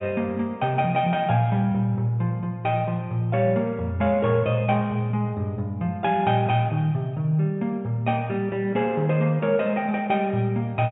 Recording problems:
low-pass filter; nothing above 4 kHz

